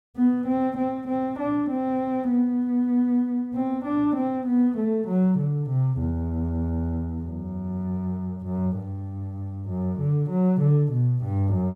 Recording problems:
none

